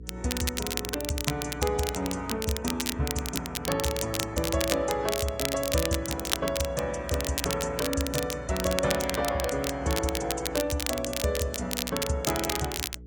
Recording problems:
lossy codec; AAC, log-spectral distance 2 dB
electrical hum; 60 Hz, harmonics up to 480 Hz, SNR 14 dB
crackle; vinyl, SNR 3 dB

